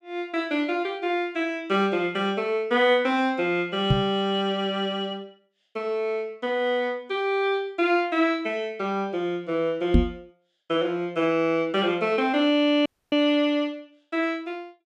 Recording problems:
microphone thump; at 4 s and at 10 s; peak +9 dB vs average level
audio cutting out; at 13 s

